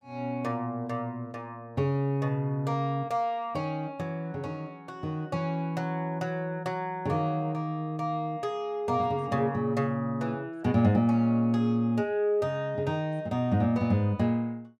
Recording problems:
none

